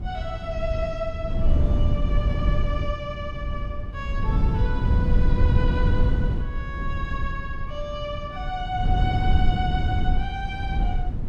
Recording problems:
wind on the microphone; below 98 Hz, SNR -6 dB

